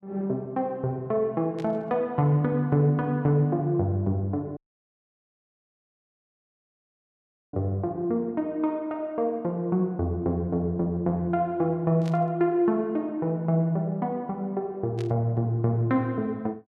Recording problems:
static burst; at 1.5 s, at 12 s and at 15 s; peak -14 dB vs average level
dropout; at 4.5 s for 3 s

